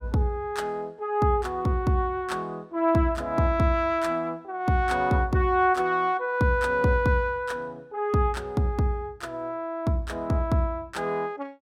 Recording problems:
none

